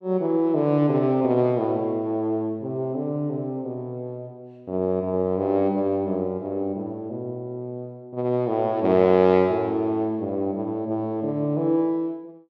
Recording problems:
none

